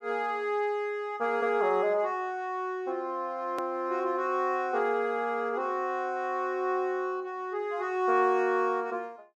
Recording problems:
edit click; at 3.5 s

